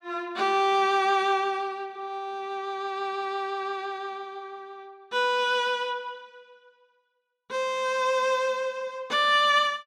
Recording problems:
none

